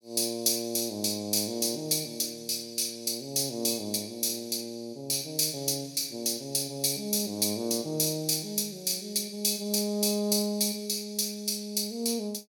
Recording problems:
none

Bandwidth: 18 kHz